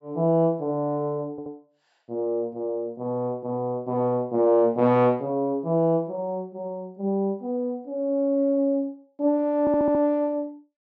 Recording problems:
treble missing; nothing above 8 kHz
audio stuttering; at 1.5 s and at 9.5 s

